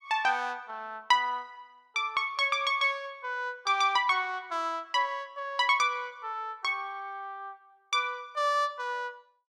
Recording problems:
none

